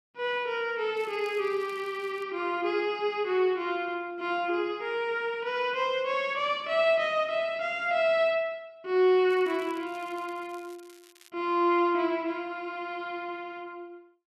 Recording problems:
crackling; from 1 to 2 s and from 9.5 to 11 s; loose cable, SNR 27 dB

